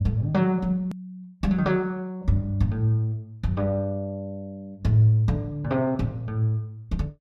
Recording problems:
edit click; at 1 s

